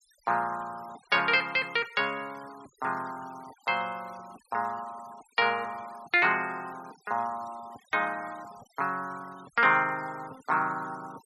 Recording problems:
denoising artefacts; signal-to-artefact ratio 24 dB

